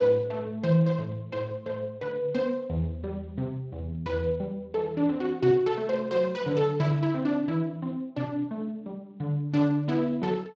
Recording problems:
lossy compression; Speex, log-spectral distance 2 dB

